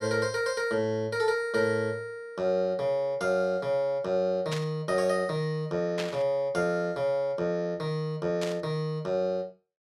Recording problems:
static burst; at 4.5 s, at 6 s and at 8.5 s; peak -2 dB vs average level

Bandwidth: 13.5 kHz